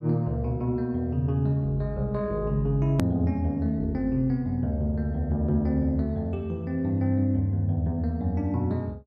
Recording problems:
edit click; at 3 s

